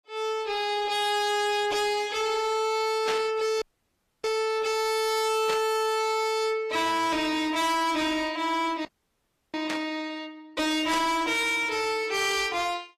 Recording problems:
lossy compression; AAC, log-spectral distance 3 dB
distorted audio; hard clipping, signal-to-distortion ratio 6 dB
burst of static; 4 times, first at 3 s; peak -2 dB vs average level
frozen audio; at 3.5 s for 0.5 s and at 9 s for 0.5 s

